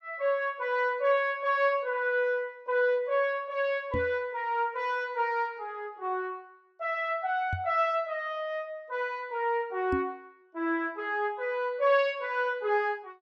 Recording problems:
microphone thump; at 4 s, at 7.5 s and at 10 s; peak 0 dB vs average level

